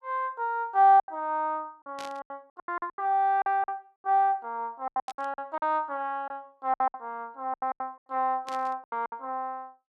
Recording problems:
packet loss; 13% of the sound replaced, filled with silence
burst of static; at 2 s, at 5 s and at 8.5 s; peak -10 dB vs average level

